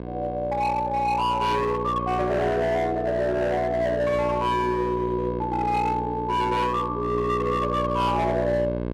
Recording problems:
distorted audio; hard clipping, signal-to-distortion ratio 10 dB
hum; 60 Hz, harmonics up to 1.6 kHz, SNR 7 dB

